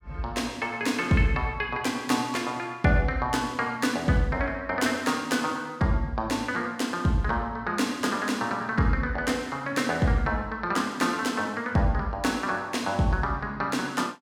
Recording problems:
none

